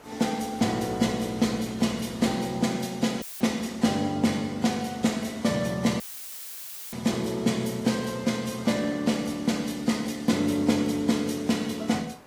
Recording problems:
codec artefacts; AAC, log-spectral distance 4 dB, nothing above 15.1 kHz
hiss; SNR 23 dB
audio cutting out; at 3 s and at 6 s for 1 s; filled with static

